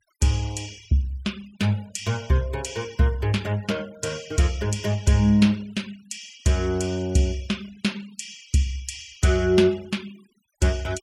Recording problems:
noise reduction artefacts; signal-to-artefact ratio 23 dB

